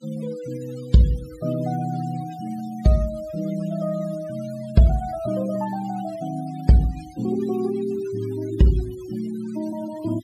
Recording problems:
denoising artefacts; signal-to-artefact ratio 20 dB

